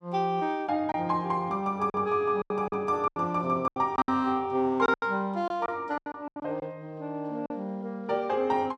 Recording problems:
lost packets; 9% of the sound replaced, filled with silence

